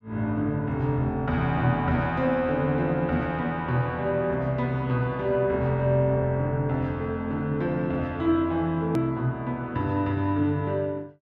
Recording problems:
edit click; at 9 s

